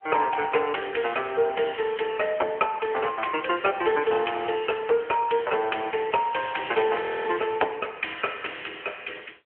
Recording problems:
phone line; 320 Hz to 3.2 kHz, AMR-NB
audio freezing; at 7 s

